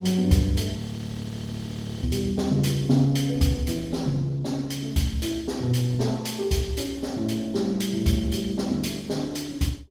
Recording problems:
codec artefacts; Opus, log-spectral distance 4 dB
audio freezing; at 1 s for 1 s

